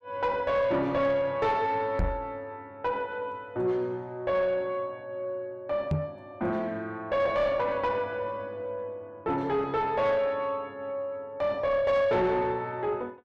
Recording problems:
distortion; soft clipping, signal-to-distortion ratio 10 dB
microphone thump; at 2 s and at 6 s; peak +4 dB vs average level

